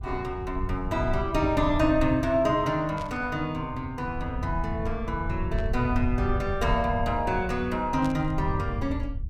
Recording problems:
low-frequency rumble; below 94 Hz, SNR 7 dB
static burst; at 3 s, at 5.5 s and at 8 s; peak -11 dB vs average level

